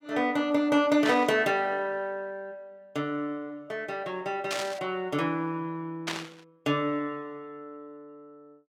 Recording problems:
static burst; at 1 s, at 4.5 s and at 6 s; peak +1 dB vs average level

